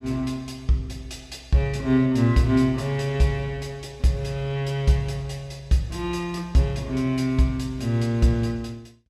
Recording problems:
none

